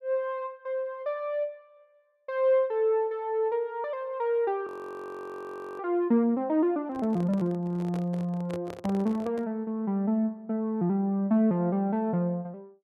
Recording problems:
audio freezing; at 4.5 s for 1 s
microphone handling noise; from 7 to 9.5 s; peak -8 dB vs average level

